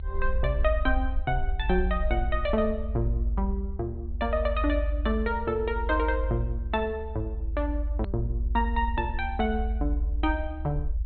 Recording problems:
treble cut off; nothing above 4.3 kHz
rumble; below 68 Hz, strongest tone 52 Hz, SNR 1 dB
hard cut with a click; at 8 s

